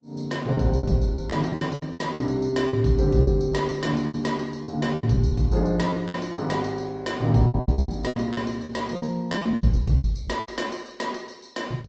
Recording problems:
low-pass filter; nothing above 7.3 kHz
lossy compression; Opus, log-spectral distance 3 dB
packet loss; 18% of the sound replaced, filled with repeated pitch periods

